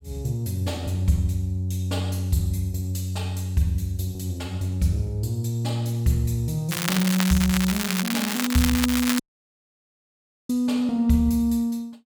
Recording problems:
crackling; from 6.5 to 9 s; loose cable, SNR 3 dB
dropout; at 9 s for 1.5 s

